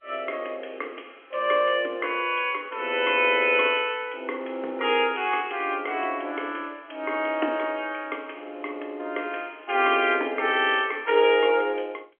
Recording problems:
telephone audio; 260 Hz to 3.3 kHz, G.711

